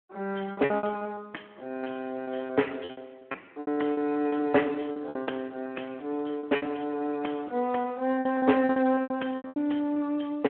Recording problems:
phone line; 220 Hz to 3 kHz, Speex
lost packets; 15% of the sound replaced, filled with repeated pitch periods

